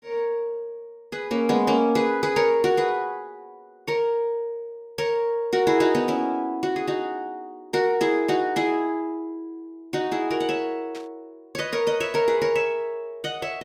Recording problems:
burst of static; at 11 s; peak -14 dB vs average level

